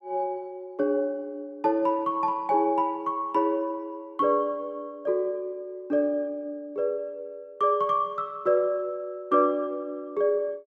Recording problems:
none

